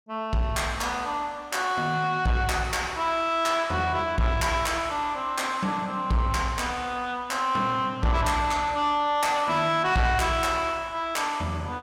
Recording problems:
distortion; soft clipping, signal-to-distortion ratio 11 dB

